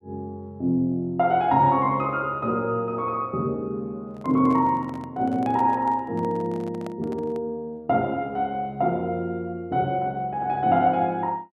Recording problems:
handling noise; from 4 to 7.5 s; peak -11 dB vs average level

